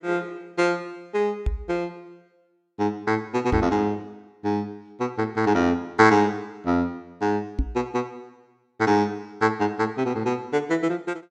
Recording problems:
microphone bump; at 1.5 s, at 3.5 s and at 7.5 s; peak +3 dB vs average level

